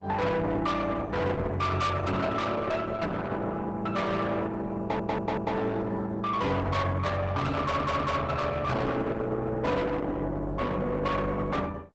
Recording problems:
lossy compression; Opus, log-spectral distance 3 dB, nothing above 8 kHz
distorted audio; soft clipping, signal-to-distortion ratio 7 dB
stutter; at 5 s and at 7.5 s

